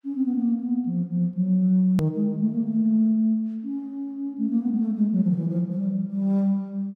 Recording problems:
click at an edit; at 2 s

